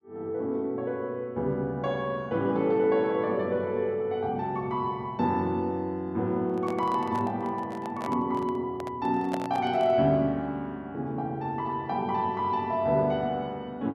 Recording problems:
handling noise; from 6.5 to 10 s; peak -1 dB vs average level

